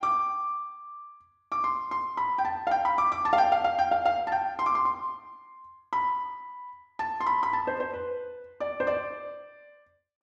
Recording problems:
none

